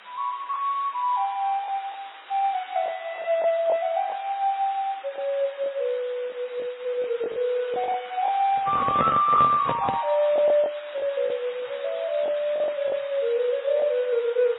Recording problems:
codec artefacts; MP3, then AAC, log-spectral distance 10 dB, nothing above 3.6 kHz
hiss; SNR 18 dB
lost packets; 6% of the sound replaced, filled with the last packet
handling noise; from 8.5 to 10 s; peak +3 dB vs average level

